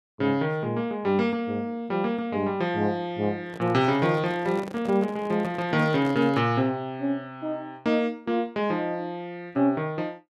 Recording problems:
handling noise; from 3.5 to 6.5 s; peak -8 dB vs average level

